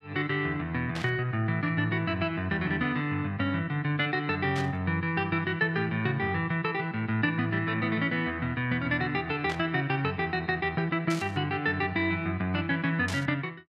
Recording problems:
static burst; 5 times, first at 1 s; peak -4 dB vs average level

